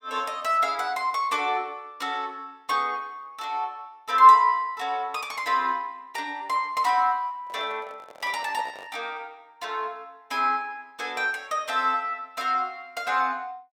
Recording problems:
microphone handling noise; from 7.5 to 9 s; peak -11 dB vs average level

